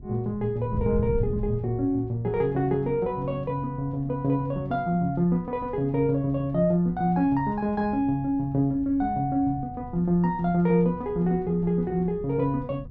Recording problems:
wind noise; below 140 Hz, SNR 14 dB

